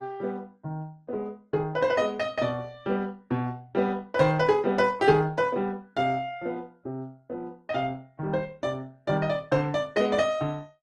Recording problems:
lossy codec; Opus, log-spectral distance 2 dB

